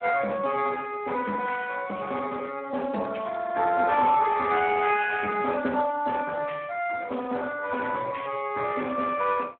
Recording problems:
telephone audio; 300 Hz to 2.9 kHz, Speex

